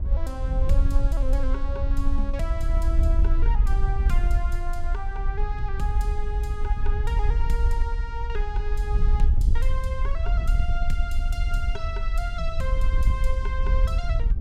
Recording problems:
wind noise; below 56 Hz, SNR -8 dB

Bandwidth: 16 kHz